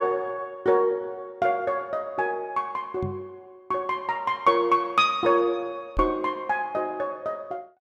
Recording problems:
microphone bump; at 3 s and at 6 s; peak -3 dB vs average level

